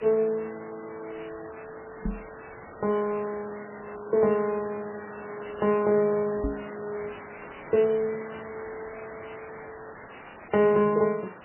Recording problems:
codec artefacts; MP3, log-spectral distance 18 dB, nothing above 2.7 kHz
background hiss; SNR 17 dB
microphone bump; at 2 s and at 6.5 s; peak -1 dB vs average level

